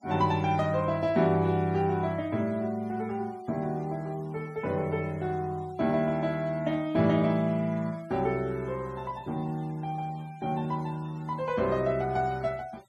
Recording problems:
noise reduction artefacts; signal-to-artefact ratio 27 dB

